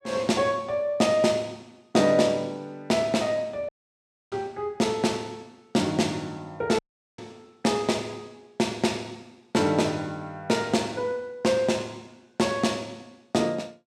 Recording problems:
dropout; at 3.5 s for 0.5 s and at 7 s

